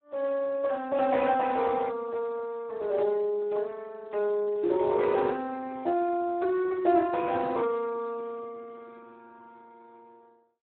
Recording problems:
telephone audio; 280 Hz to 2.5 kHz, Speex

